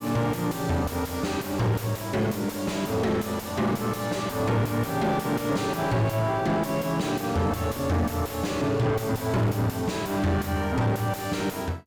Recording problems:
distortion; soft clipping, signal-to-distortion ratio 6 dB

